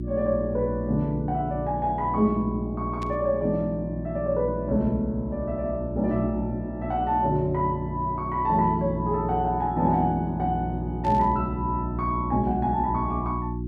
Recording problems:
hum; 60 Hz, harmonics up to 360 Hz, SNR 7 dB
static burst; at 3 s and at 11 s; peak -13 dB vs average level

